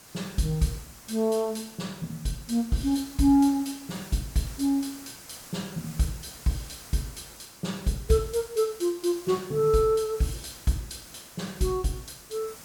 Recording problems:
background hiss; SNR 18 dB

